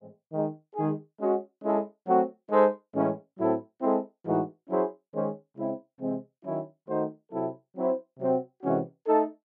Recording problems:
none

